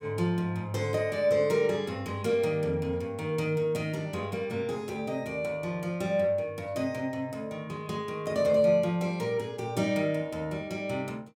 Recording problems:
none

